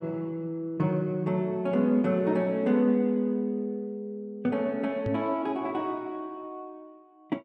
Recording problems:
microphone thump; at 5 s; peak 0 dB vs average level

